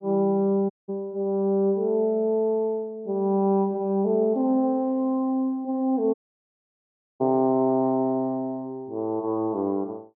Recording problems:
audio cutting out; at 0.5 s and at 6 s for 1 s

